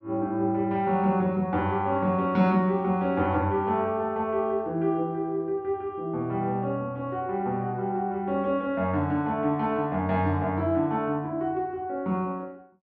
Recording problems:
none

